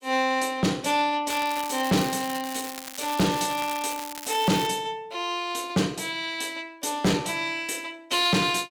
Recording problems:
distorted audio; hard clipping, signal-to-distortion ratio 6 dB
crackle; from 1.5 to 4.5 s; loose cable, SNR 11 dB

